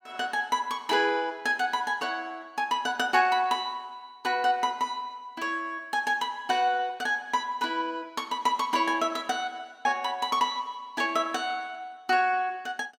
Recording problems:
none

